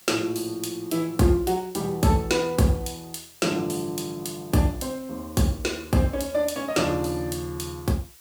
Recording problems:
hiss; slope +2 dB per octave, SNR 23 dB

